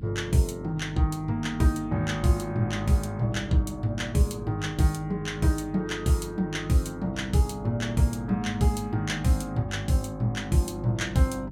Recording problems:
hum; 50 Hz, harmonics up to 300 Hz, SNR 14 dB

